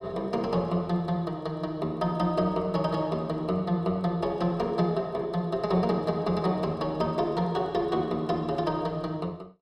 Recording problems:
none

